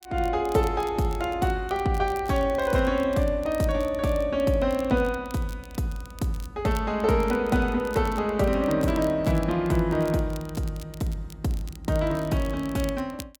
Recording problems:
crackle; vinyl, SNR 22 dB

